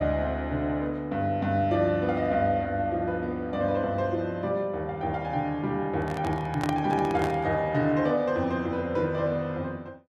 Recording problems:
handling noise; from 6 to 7.5 s; peak -1 dB vs average level

